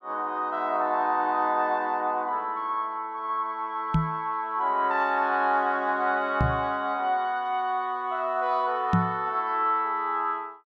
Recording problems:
knock on the microphone; at 4 s, at 6.5 s and at 9 s; peak +6 dB vs average level

